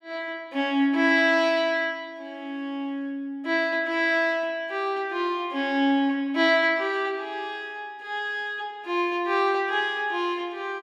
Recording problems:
none

